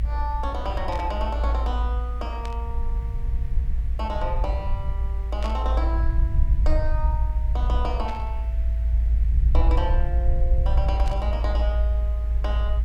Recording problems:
hiss; SNR 20 dB
low-frequency rumble; below 58 Hz, strongest tone 56 Hz, SNR -7 dB
static burst; 5 times, first at 1 s; peak -3 dB vs average level

